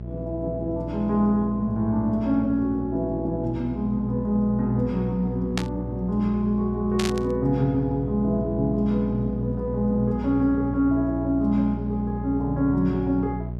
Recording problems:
hum; 60 Hz, harmonics up to 600 Hz, SNR 8 dB
static burst; at 5.5 s and at 7 s; peak 0 dB vs average level

